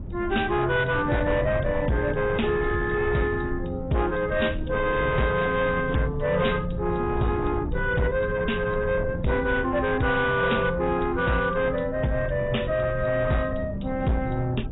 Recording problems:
codec artefacts; AAC, log-spectral distance 3 dB, nothing above 3.8 kHz
distorted audio; soft clipping, signal-to-distortion ratio 11 dB
wind on the microphone; below 180 Hz, SNR 9 dB

